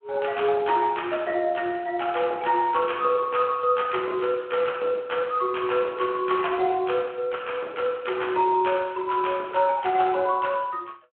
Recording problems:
phone line; 300 Hz to 3.4 kHz, Speex

